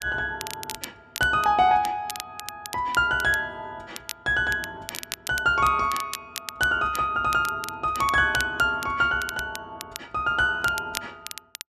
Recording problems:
crackling; vinyl, SNR 14 dB

